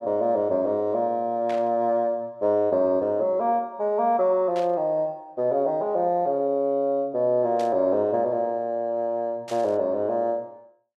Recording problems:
static burst; 4 times, first at 1.5 s; peak -11 dB vs average level

